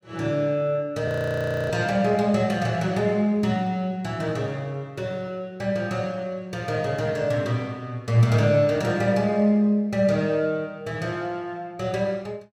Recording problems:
frozen audio; at 1 s for 0.5 s

